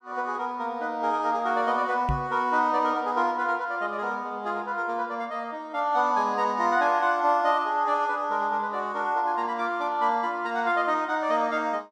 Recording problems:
knock on the microphone; at 2 s; peak +1 dB vs average level

